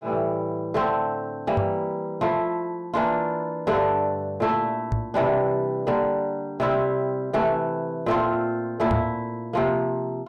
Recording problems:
distorted audio; soft clipping, signal-to-distortion ratio 11 dB
microphone bump; at 1.5 s, at 5 s and at 9 s; peak +5 dB vs average level

